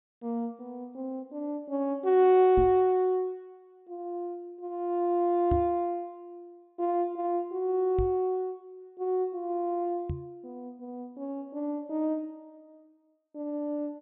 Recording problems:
low-pass filter; nothing above 3.7 kHz
microphone thump; 4 times, first at 2.5 s; peak +1 dB vs average level

